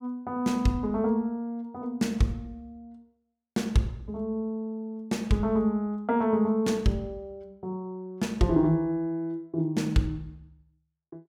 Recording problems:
none

